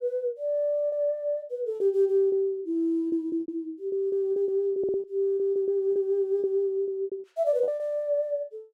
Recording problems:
lost packets; 12% of the sound replaced, filled with repeated pitch periods
stutter; at 5 s

